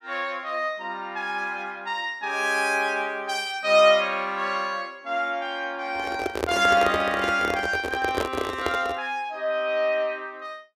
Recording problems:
handling noise; from 6 to 9 s; peak +3 dB vs average level

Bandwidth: 15.5 kHz